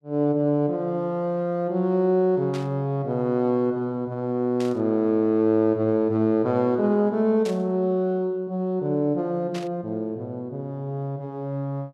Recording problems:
static burst; 4 times, first at 2.5 s; peak -9 dB vs average level

